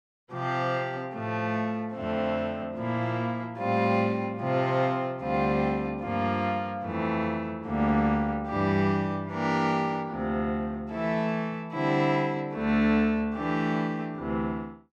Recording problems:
none

